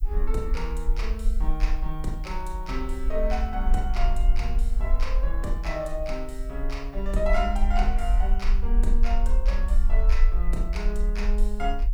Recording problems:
hiss; SNR 29 dB
rumble; below 42 Hz, strongest tone 24 Hz, SNR -5 dB

